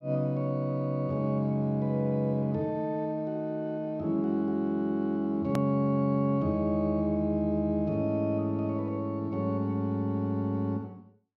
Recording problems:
click at an edit; at 5.5 s

